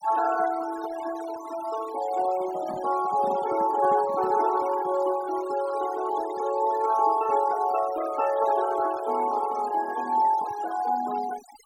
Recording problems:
denoising artefacts; signal-to-artefact ratio 15 dB
handling noise; from 2.5 to 4.5 s; peak -10 dB vs average level

